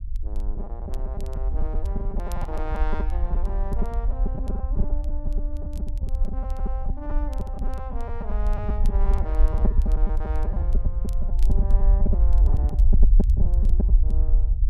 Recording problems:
low-frequency rumble; below 54 Hz, SNR -13 dB
crackle; vinyl, SNR 18 dB
packet loss; 10% of the sound replaced, filled with repeated pitch periods

